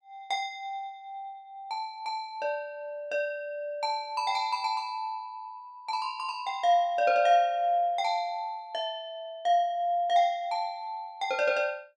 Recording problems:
none

